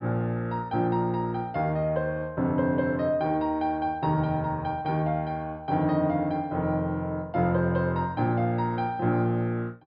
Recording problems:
treble cut off; nothing above 5.5 kHz

